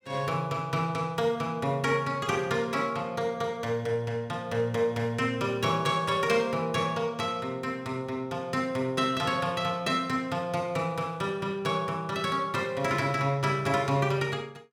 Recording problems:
none

